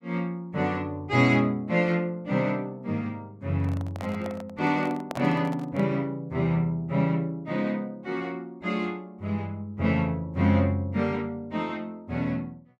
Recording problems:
microphone handling noise; from 3.5 to 6 s; peak -3 dB vs average level

